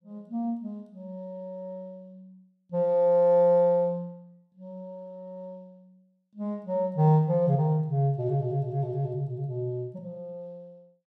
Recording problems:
none

